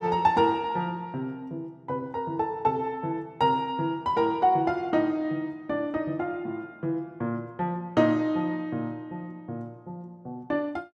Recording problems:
none

